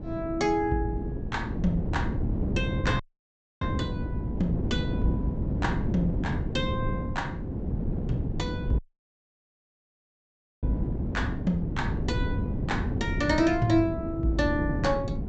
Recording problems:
low-pass filter; nothing above 8 kHz
wind noise; below 240 Hz, SNR 1 dB
audio cutting out; at 3 s for 0.5 s and at 9 s for 2 s

